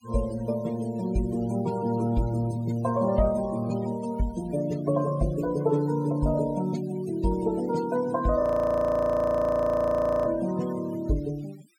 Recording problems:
denoising artefacts; signal-to-artefact ratio 18 dB
audio freezing; at 8.5 s for 2 s

